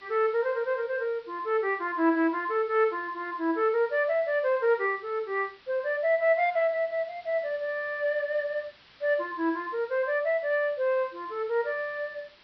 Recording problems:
low-pass filter; nothing above 5.5 kHz
hiss; SNR 27 dB

